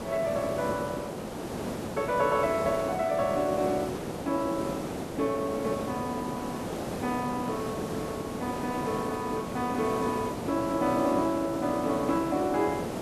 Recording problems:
background hiss; slope -8 dB per octave, SNR 5 dB

